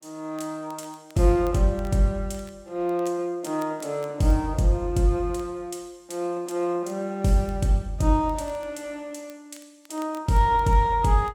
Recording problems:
crackle; vinyl, SNR 30 dB

